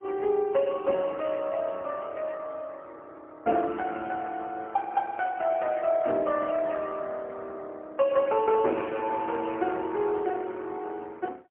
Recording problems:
phone line; 240 Hz to 3.1 kHz, AMR-NB, then MP3

